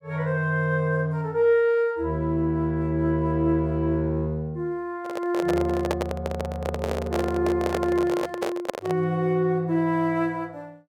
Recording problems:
microphone handling noise; from 5 to 9 s; peak +3 dB vs average level

